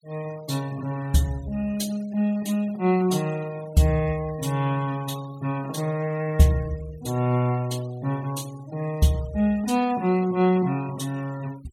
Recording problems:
denoising artefacts; signal-to-artefact ratio 21 dB

